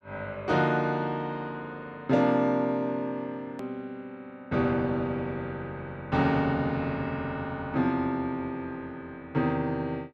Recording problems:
hard cut with a click; at 3.5 s

